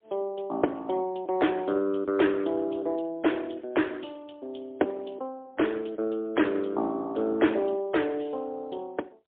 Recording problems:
phone line; 240 Hz to 3.5 kHz, AMR-NB, then MP3

